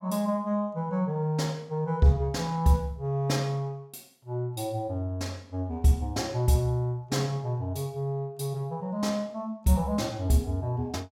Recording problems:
none

